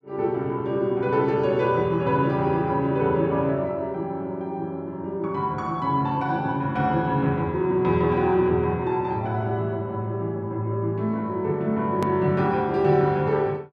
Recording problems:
edit click; at 12 s

